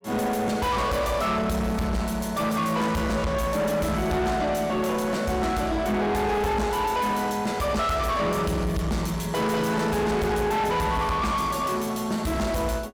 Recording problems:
distortion; soft clipping, signal-to-distortion ratio 7 dB

